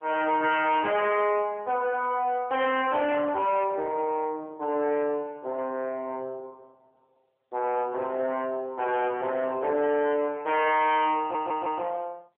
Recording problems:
phone line; 300 Hz to 3.3 kHz, AMR-NB
distortion; soft clipping, signal-to-distortion ratio 10 dB
stutter; at 11 s

